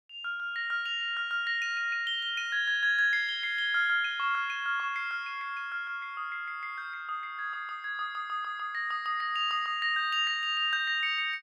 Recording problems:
none

